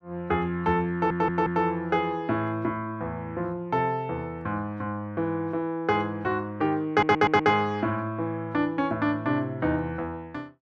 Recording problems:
audio stuttering; at 1 s and at 7 s

